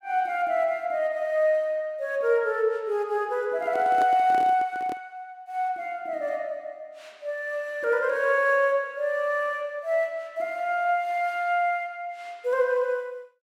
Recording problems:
microphone handling noise; from 3.5 to 5 s; peak -6 dB vs average level

